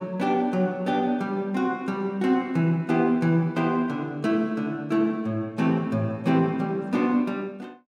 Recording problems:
none

